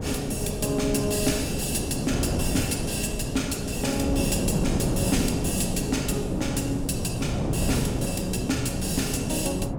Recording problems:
hum; 60 Hz, harmonics up to 1.5 kHz, SNR 20 dB
wind on the microphone; below 350 Hz, SNR 2 dB

